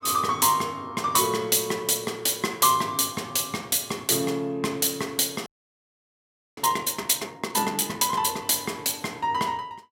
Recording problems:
frozen audio; at 5.5 s for 1 s

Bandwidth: 16.5 kHz